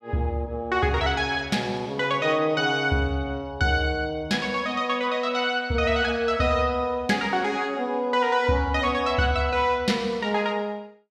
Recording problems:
none

